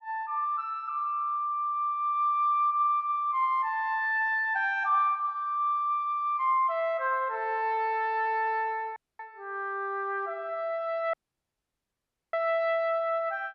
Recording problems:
dropout; at 9 s and at 11 s for 1 s

